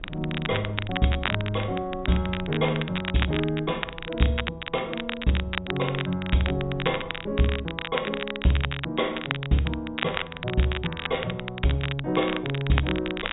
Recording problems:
low-pass filter; nothing above 4 kHz
wind on the microphone; below 210 Hz, SNR 20 dB
crackling; vinyl, SNR 6 dB

